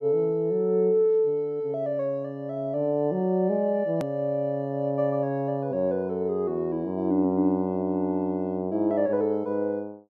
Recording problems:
click at an edit; at 4 s

